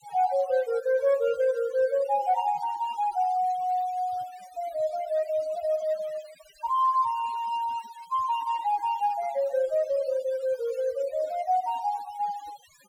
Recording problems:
denoising artefacts; signal-to-artefact ratio 21 dB

